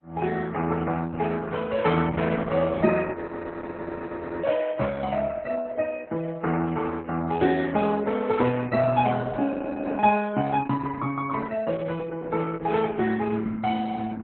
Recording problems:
lossy compression; MP3, then Opus, log-spectral distance 3 dB, nothing above 4 kHz
audio freezing; at 3 s for 1.5 s and at 9.5 s

